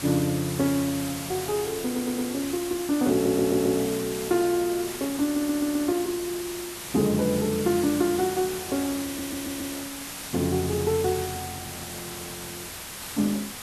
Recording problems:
background hiss; slope -1 dB per octave, SNR 8 dB
stutter; 4 times, first at 2 s

